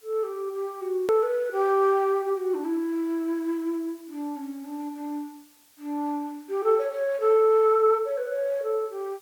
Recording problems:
hiss; slope +1 dB per octave, SNR 29 dB
hard cut with a click; at 1 s

